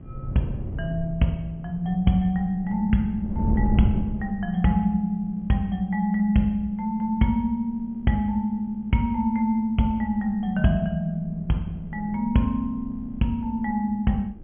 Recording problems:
treble missing; nothing above 3.3 kHz
electrical hum; 60 Hz, harmonics up to 1.3 kHz, SNR 29 dB
wind noise; below 140 Hz, SNR 10 dB

